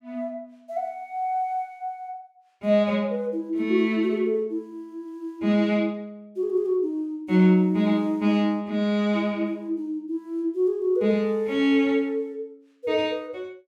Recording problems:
none

